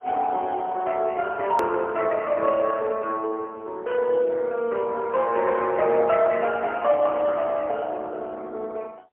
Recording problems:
telephone audio; 300 Hz to 3 kHz, AMR-NB, then MP3
edit click; at 1.5 s

